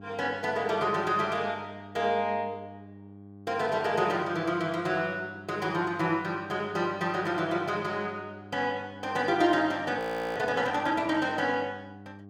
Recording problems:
hum; 50 Hz, harmonics up to 800 Hz, SNR 18 dB
frozen audio; at 10 s

